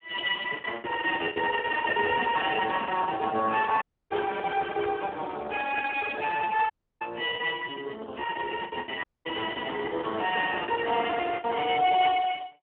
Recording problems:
phone line; 340 Hz to 2.6 kHz, Speex
lost packets; 11% of the sound replaced, filled with the last packet
dropout; at 4 s, at 6.5 s and at 9 s

